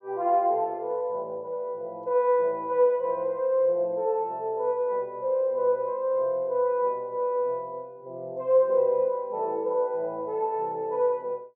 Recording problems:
none

